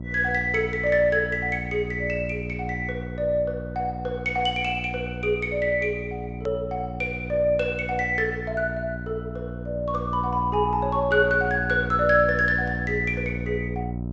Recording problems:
treble missing; nothing above 8 kHz
hum; 60 Hz, harmonics up to 660 Hz, SNR 8 dB
click at an edit; at 6.5 s

